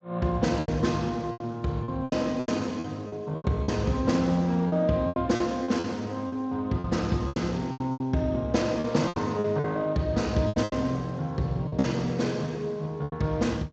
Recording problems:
lossy compression; Speex, log-spectral distance 2 dB, nothing above 7.3 kHz
packet loss; 12% of the sound replaced, filled with repeated pitch periods

